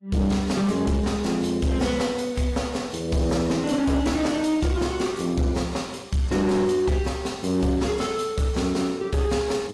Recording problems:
lossy compression; AAC, log-spectral distance 3 dB, nothing above 11.3 kHz
distortion; hard clipping, uneven, signal-to-distortion ratio 11 dB

